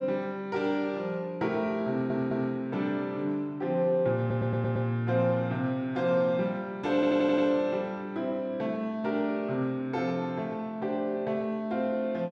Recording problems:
audio stuttering; at 2 s, at 4 s and at 7 s

